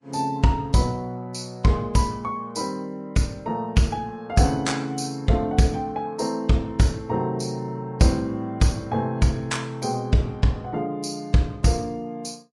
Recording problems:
codec artefacts; Vorbis, log-spectral distance 2 dB, nothing above 11 kHz

